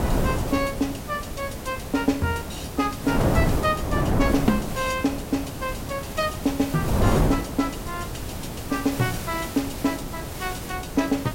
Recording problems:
hiss; slope 0 dB per octave, SNR 11 dB
wind on the microphone; below 470 Hz, SNR 2 dB

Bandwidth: 16 kHz